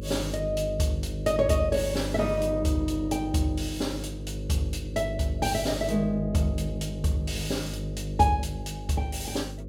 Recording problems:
electrical hum; 50 Hz, harmonics up to 550 Hz, SNR 7 dB

